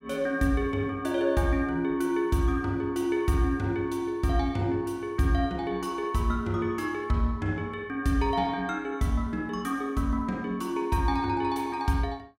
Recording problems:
none

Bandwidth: 16 kHz